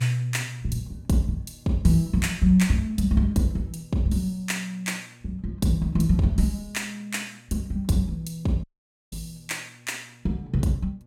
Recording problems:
hum; 60 Hz, harmonics up to 840 Hz, SNR 27 dB
dropout; at 8.5 s

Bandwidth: 16.5 kHz